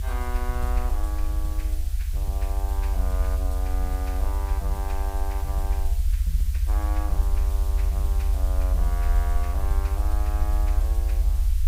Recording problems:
background hiss; slope +3 dB per octave, SNR 8 dB
low-frequency rumble; below 70 Hz, strongest tone 42 Hz, SNR -11 dB

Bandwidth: 15.5 kHz